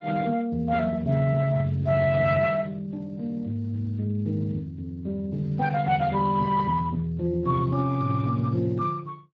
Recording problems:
lossy compression; Speex, log-spectral distance 2 dB

